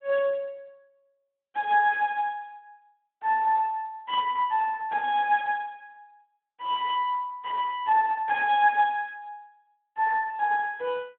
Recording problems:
telephone audio; 260 Hz to 2.3 kHz, Speex

